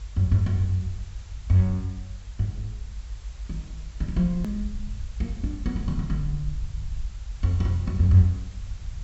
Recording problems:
treble cut off; nothing above 7.7 kHz
hiss; slope -1 dB per octave, SNR 27 dB
low-frequency rumble; below 60 Hz, SNR 12 dB
hard cut with a click; at 4.5 s

